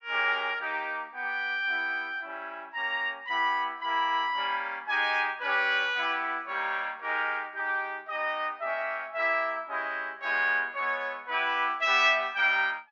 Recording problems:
low-pass filter; nothing above 7.7 kHz

